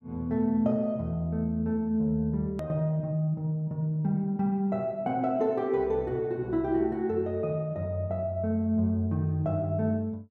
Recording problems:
hard cut with a click; at 2.5 s

